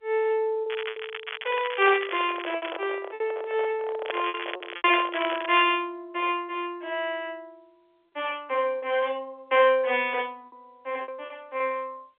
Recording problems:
telephone audio; 300 Hz to 3.4 kHz, G.711
lost packets; 6% of the sound replaced, filled with repeated pitch periods
crackle; from 0.5 to 3 s and from 4 to 5.5 s; loose cable, SNR 10 dB
microphone handling noise; from 2 to 5.5 s; peak -3 dB vs average level

